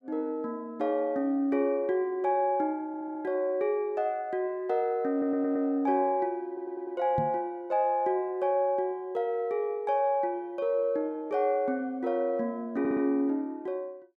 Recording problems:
stutter; 4 times, first at 3 s
knock on the microphone; at 7 s; peak -1 dB vs average level

